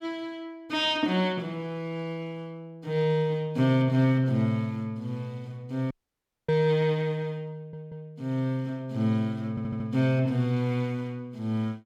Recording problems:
audio cutting out; at 6 s for 0.5 s
audio stuttering; at 7.5 s and at 9.5 s

